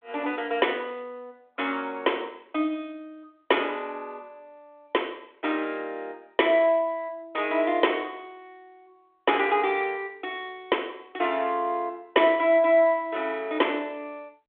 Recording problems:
telephone audio; 260 Hz to 3.5 kHz, G.726

